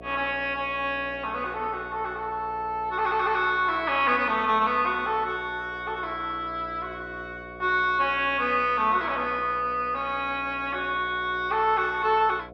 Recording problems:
hum; 60 Hz, harmonics up to 720 Hz, SNR 19 dB

